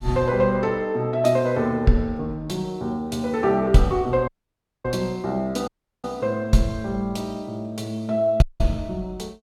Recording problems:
dropout; at 4.5 s for 0.5 s, at 5.5 s and at 8.5 s

